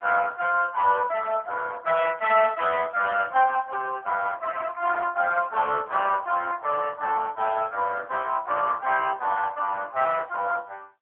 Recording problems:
telephone audio; 340 Hz to 2.6 kHz, AMR-NB

